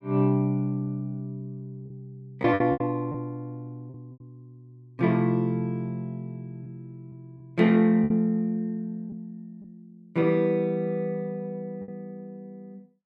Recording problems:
packet loss; 5% of the sound replaced, filled with repeated pitch periods

